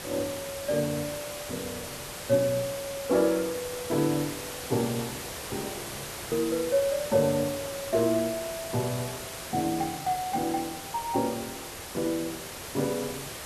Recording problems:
hiss; slope -3 dB per octave, SNR 7 dB

